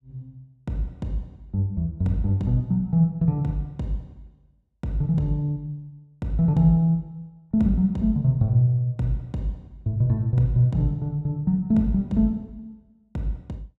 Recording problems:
none

